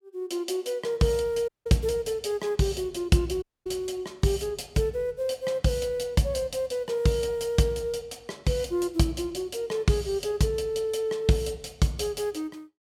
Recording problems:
audio cutting out; at 1.5 s and at 3.5 s

